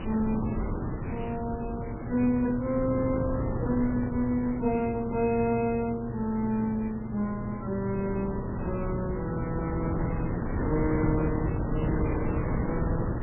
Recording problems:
lossy compression; MP3, log-spectral distance 13 dB, nothing above 2.6 kHz
mains hum; 60 Hz, harmonics up to 600 Hz, SNR 10 dB
hiss; SNR 23 dB
wind on the microphone; below 360 Hz, SNR 3 dB

